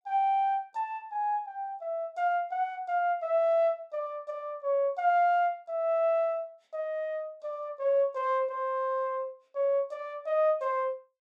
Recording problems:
none

